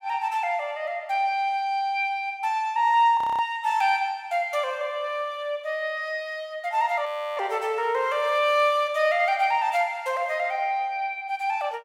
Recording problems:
audio freezing; at 3 s and at 7 s

